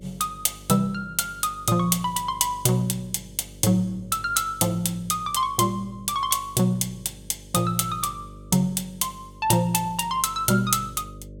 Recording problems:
hum; 50 Hz, harmonics up to 600 Hz, SNR 21 dB

